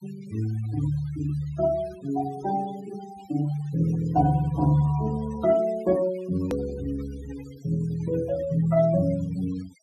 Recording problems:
noise reduction artefacts; signal-to-artefact ratio 17 dB
edit click; at 6.5 s

